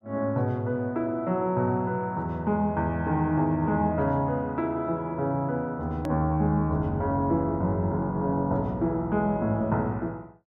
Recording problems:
hard cut with a click; at 6 s

